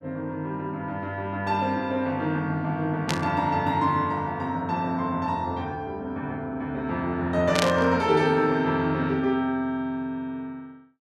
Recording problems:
static burst; at 3 s and at 7.5 s; peak +5 dB vs average level

